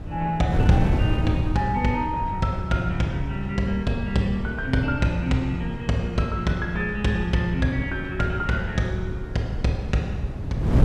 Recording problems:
wind noise; below 170 Hz, SNR 5 dB

